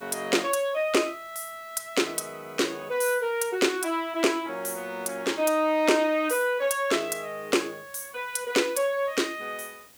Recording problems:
hiss; slope -1 dB per octave, SNR 25 dB

